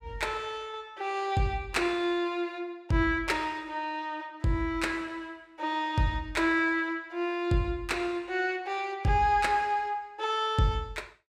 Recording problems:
none

